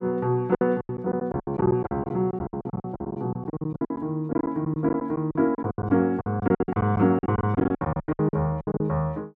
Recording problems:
lost packets; 21% of the sound replaced, filled with silence

